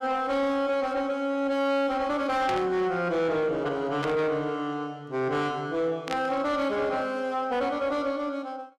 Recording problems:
distorted audio; soft clipping, signal-to-distortion ratio 11 dB
static burst; at 2.5 s, at 4 s and at 6 s; peak -2 dB vs average level

